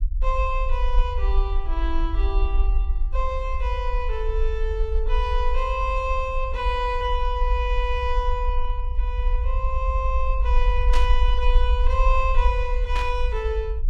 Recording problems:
low-frequency rumble; below 52 Hz, SNR -2 dB
burst of static; at 11 s and at 13 s; peak -1 dB vs average level

